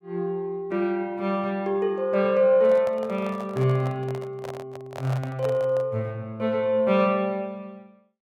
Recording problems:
handling noise; from 2.5 to 6 s; peak -8 dB vs average level

